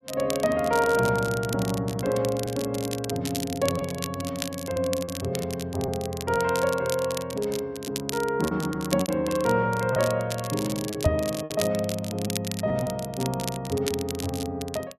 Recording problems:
crackle; vinyl, SNR 10 dB
packet loss; 4% of the sound replaced, filled with repeated pitch periods
knock on the microphone; at 11 s; peak +7 dB vs average level

